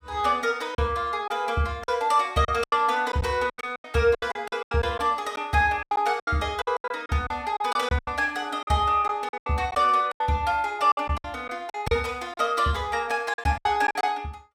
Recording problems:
packet loss; 13% of the sound replaced, filled with silence

